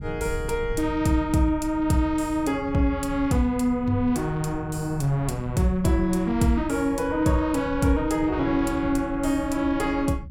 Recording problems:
low-frequency rumble; below 140 Hz, SNR 13 dB

